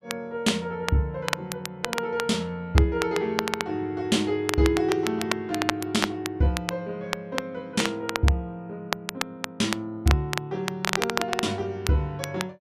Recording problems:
crackle; vinyl, SNR 5 dB

